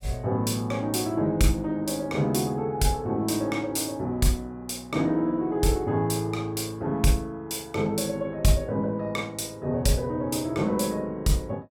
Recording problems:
none

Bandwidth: 17 kHz